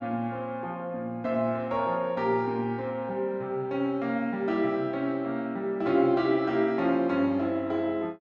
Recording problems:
none

